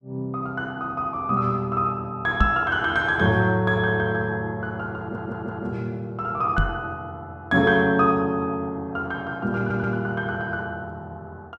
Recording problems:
microphone thump; at 2.5 s and at 6.5 s; peak +6 dB vs average level
audio stuttering; at 5 s and at 9.5 s

